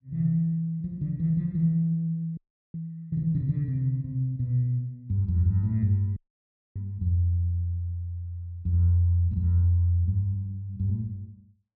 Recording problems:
frozen audio; at 2.5 s and at 6 s for 0.5 s

